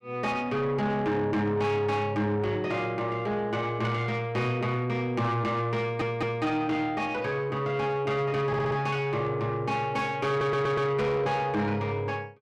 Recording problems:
distorted audio; soft clipping, signal-to-distortion ratio 11 dB
stutter; at 6 s, at 8.5 s and at 10 s

